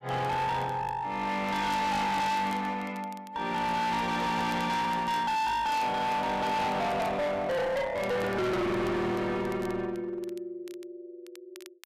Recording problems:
distorted audio; hard clipping, uneven, signal-to-distortion ratio 6 dB
crackling; vinyl, SNR 26 dB

